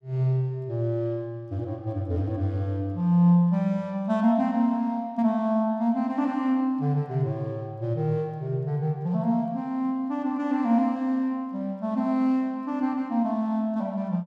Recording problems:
none

